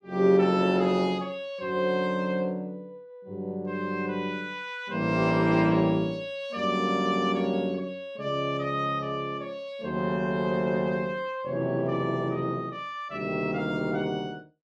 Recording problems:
none

